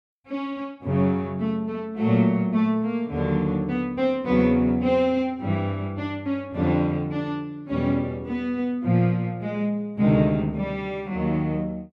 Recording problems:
none

